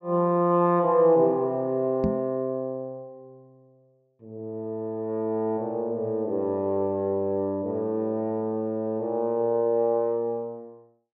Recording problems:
treble missing; nothing above 8 kHz
microphone thump; at 2 s; peak +2 dB vs average level

